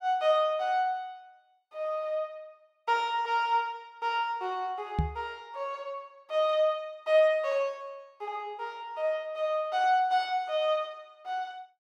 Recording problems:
microphone thump; at 5 s; peak +5 dB vs average level

